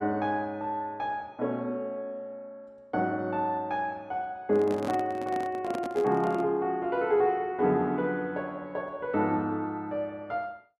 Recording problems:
microphone handling noise; from 4.5 to 6.5 s; peak -3 dB vs average level

